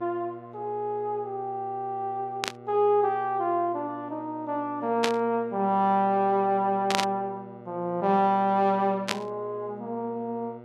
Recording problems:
hum; 60 Hz, harmonics up to 2 kHz, SNR 19 dB
burst of static; 4 times, first at 2.5 s; peak +5 dB vs average level

